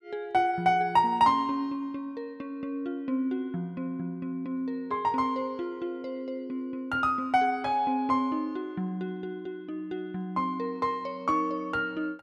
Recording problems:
none

